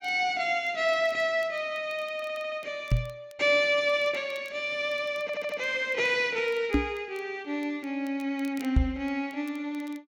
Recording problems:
crackling; vinyl, SNR 29 dB
stutter; at 2 s and at 5 s
knock on the microphone; at 3 s, at 6.5 s and at 9 s; peak +8 dB vs average level

